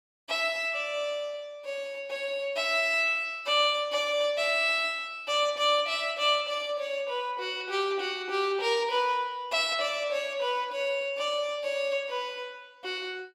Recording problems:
none

